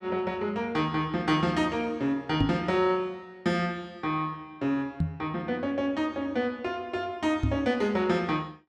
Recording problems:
knock on the microphone; at 2.5 s, at 5 s and at 7.5 s; peak +6 dB vs average level

